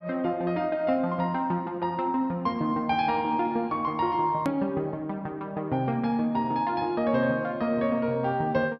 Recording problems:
treble missing; nothing above 5.5 kHz
edit click; at 4.5 s

